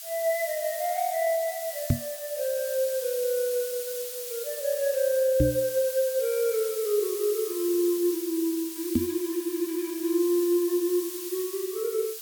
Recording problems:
background hiss; slope +6 dB per octave, SNR 8 dB
microphone thump; at 2 s, at 5.5 s and at 9 s; peak +7 dB vs average level

